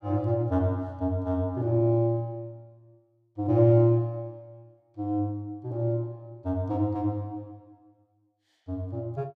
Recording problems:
none

